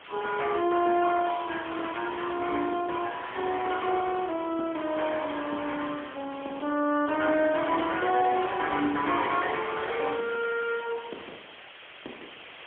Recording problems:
telephone audio; 260 Hz to 3.3 kHz, AMR-NB, then MP3
hiss; SNR 16 dB

